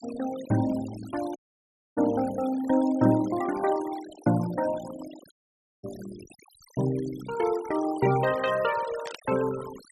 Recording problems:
noise reduction artefacts; signal-to-artefact ratio 17 dB
dropout; at 1.5 s for 0.5 s and at 5.5 s for 0.5 s
burst of static; at 9 s; peak -9 dB vs average level

